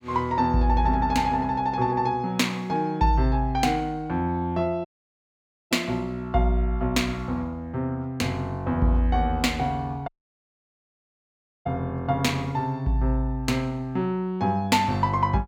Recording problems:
audio cutting out; at 5 s for 1 s and at 10 s for 1.5 s

